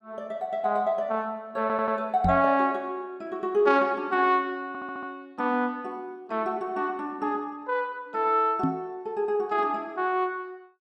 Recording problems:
stutter; at 1.5 s and at 4.5 s
microphone thump; at 2 s and at 8.5 s; peak +4 dB vs average level

